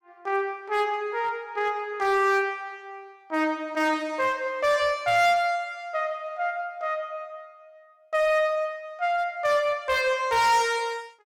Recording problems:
distorted audio; hard clipping, uneven, signal-to-distortion ratio 10 dB

